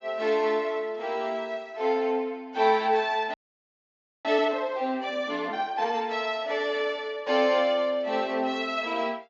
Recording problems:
low-pass filter; nothing above 8 kHz
audio freezing; at 3.5 s for 1 s

